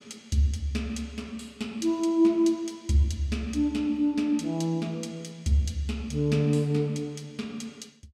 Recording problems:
none

